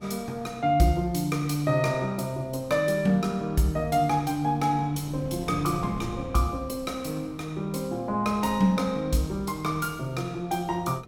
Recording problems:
wind noise; below 300 Hz, SNR 18 dB

